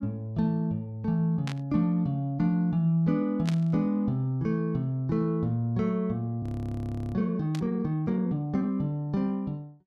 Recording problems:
static burst; at 1.5 s, at 3.5 s and at 7.5 s; peak -5 dB vs average level
audio freezing; at 6.5 s for 0.5 s

